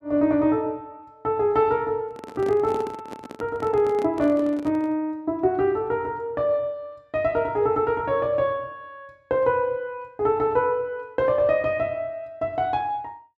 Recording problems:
handling noise; from 2 to 5 s; peak -6 dB vs average level

